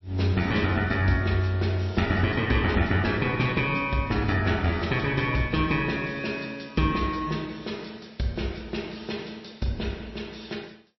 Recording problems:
lossy codec; MP3, log-spectral distance 4 dB, nothing above 5.7 kHz

